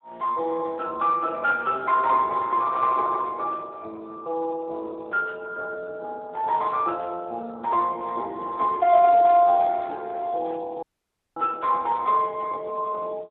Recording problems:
phone line; 300 Hz to 2.1 kHz, Speex
audio cutting out; at 11 s for 0.5 s

